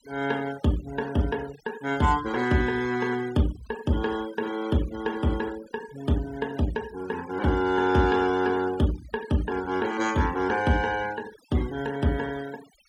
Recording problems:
denoising artefacts; signal-to-artefact ratio 18 dB

